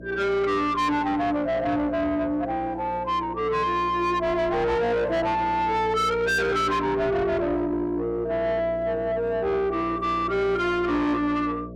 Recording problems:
distortion; soft clipping, signal-to-distortion ratio 6 dB
hum; 60 Hz, harmonics up to 660 Hz, SNR 15 dB

